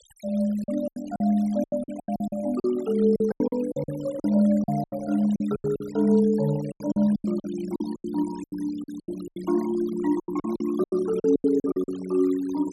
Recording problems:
noise reduction artefacts; signal-to-artefact ratio 21 dB
packet loss; 17% of the sound replaced, filled with silence

